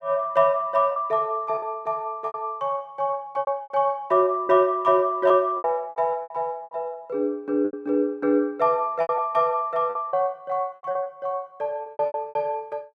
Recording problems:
lost packets; 11% of the sound replaced, filled with repeated pitch periods

